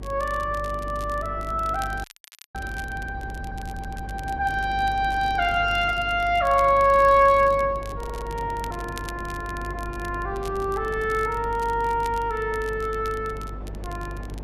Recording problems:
mains hum; 50 Hz, harmonics up to 450 Hz, SNR 14 dB
wind on the microphone; below 560 Hz, SNR 18 dB
crackling; vinyl, SNR 23 dB
frozen audio; at 2 s for 0.5 s
audio stuttering; at 3.5 s and at 8 s

